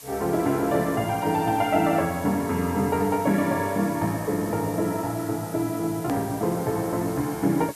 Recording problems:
background hiss; slope 0 dB per octave, SNR 16 dB
hard cut with a click; at 6 s

